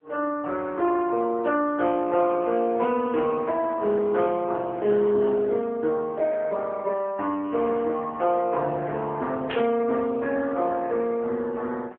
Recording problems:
telephone audio; 240 Hz to 3.7 kHz, AMR-NB
static burst; at 9.5 s; peak -5 dB vs average level

